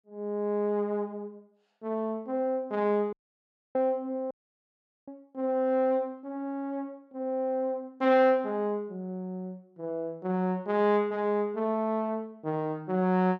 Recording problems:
dropout; at 3 s for 0.5 s and at 4.5 s for 1 s

